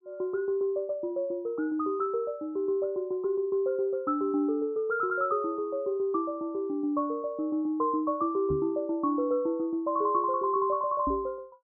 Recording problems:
knock on the microphone; at 8.5 s and at 11 s; peak 0 dB vs average level

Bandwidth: 1.5 kHz